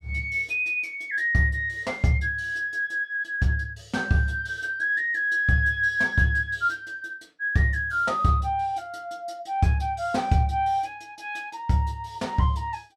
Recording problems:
none

